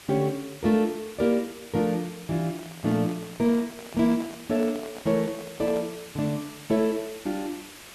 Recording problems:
hiss; slope -1 dB per octave, SNR 17 dB
handling noise; from 2.5 to 6 s; peak -10 dB vs average level

